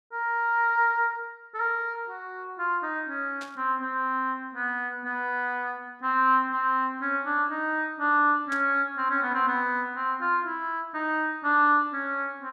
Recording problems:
burst of static; at 3.5 s and at 8.5 s; peak -12 dB vs average level

